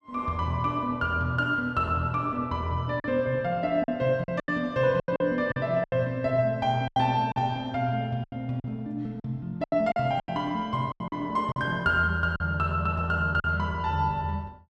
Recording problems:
lost packets; 8% of the sound replaced, filled with silence

